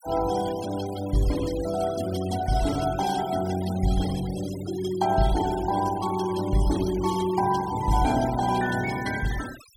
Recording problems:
denoising artefacts; signal-to-artefact ratio 14 dB

